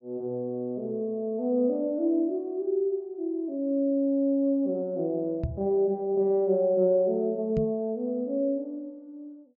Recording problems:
treble cut off; nothing above 8 kHz
knock on the microphone; at 5.5 s and at 7.5 s; peak 0 dB vs average level

